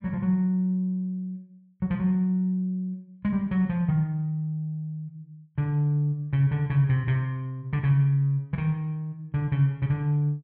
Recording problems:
none

